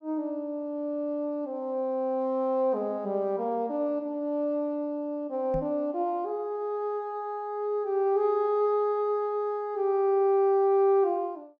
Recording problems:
microphone thump; at 5.5 s; peak -5 dB vs average level

